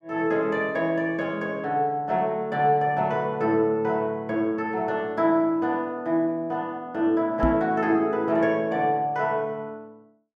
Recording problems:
knock on the microphone; at 7.5 s; peak +3 dB vs average level

